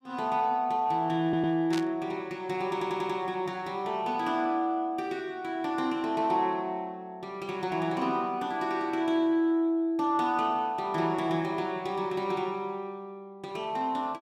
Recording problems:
stutter; at 1 s and at 2.5 s
static burst; at 1.5 s; peak -4 dB vs average level

